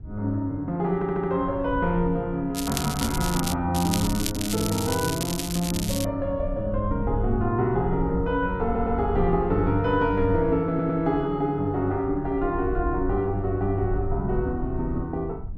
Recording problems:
wind on the microphone; below 84 Hz, SNR 10 dB
audio stuttering; at 1 s, at 8.5 s and at 11 s
crackling; at 2.5 s and from 3.5 to 6 s; loose cable, SNR 6 dB

